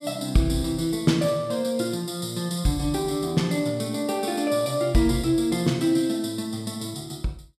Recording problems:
none

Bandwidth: 14.5 kHz